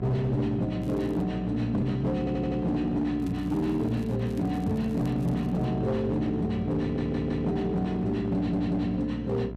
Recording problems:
distorted audio; hard clipping, signal-to-distortion ratio 12 dB
hum; 60 Hz, harmonics up to 1 kHz, SNR 10 dB
crackling; at 1 s and from 3 to 5.5 s; loose cable, SNR 28 dB
stutter; at 2 s, at 7 s and at 8.5 s

